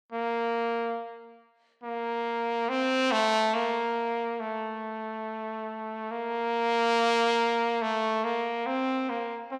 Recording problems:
none

